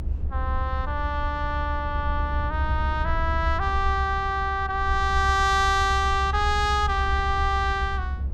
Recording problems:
low-frequency rumble; below 72 Hz, strongest tone 70 Hz, SNR 4 dB

